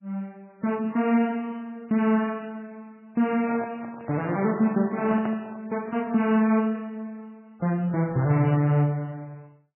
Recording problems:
codec artefacts; MP3, log-spectral distance 2 dB, nothing above 2.8 kHz
handling noise; from 3.5 to 5.5 s; peak -6 dB vs average level

